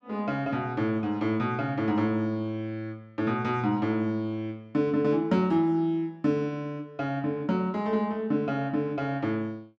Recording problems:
none

